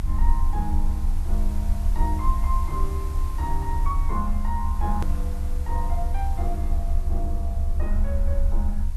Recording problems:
background hiss; SNR 14 dB
low-frequency rumble; below 68 Hz, strongest tone 24 Hz, SNR -7 dB
click at an edit; at 5 s

